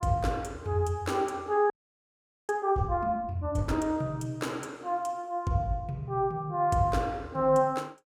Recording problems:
audio freezing; at 1.5 s for 1 s

